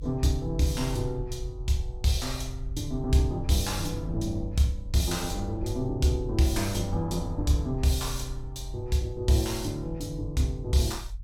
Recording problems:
low-frequency rumble; below 62 Hz, strongest tone 44 Hz, SNR 10 dB

